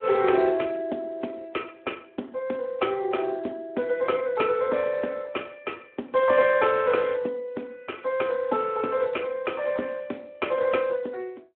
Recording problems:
telephone audio; 220 Hz to 3.4 kHz, Speex

